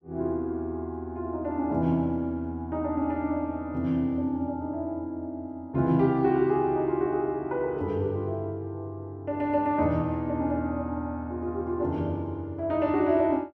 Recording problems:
none

